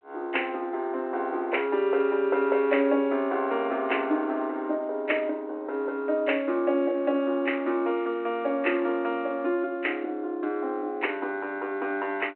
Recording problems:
telephone audio; 240 Hz to 3.1 kHz, G.726

